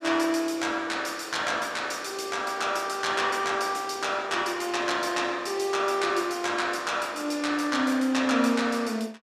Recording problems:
none

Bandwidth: 15 kHz